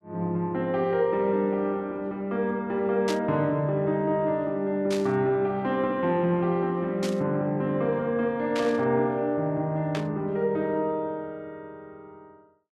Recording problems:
static burst; 5 times, first at 3 s; peak -3 dB vs average level

